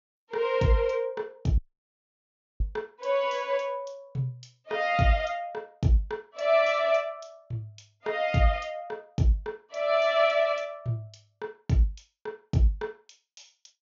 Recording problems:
treble cut off; nothing above 7 kHz
audio cutting out; at 1.5 s for 1 s

